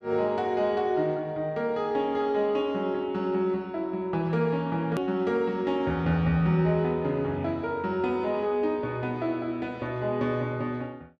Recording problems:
hard cut with a click; at 5 s

